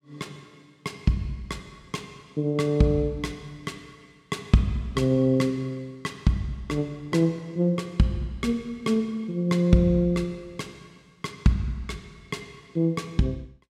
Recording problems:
none

